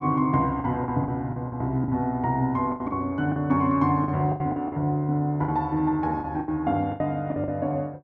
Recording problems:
packet loss; 12% of the sound replaced, filled with the last packet

